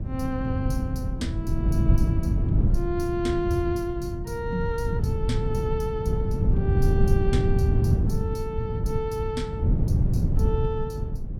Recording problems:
wind noise; below 140 Hz, SNR -4 dB

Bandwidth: 17.5 kHz